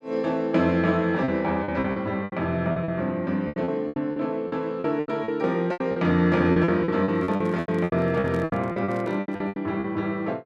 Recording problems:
packet loss; 17% of the sound replaced, filled with repeated pitch periods
handling noise; from 7 to 9.5 s; peak -8 dB vs average level

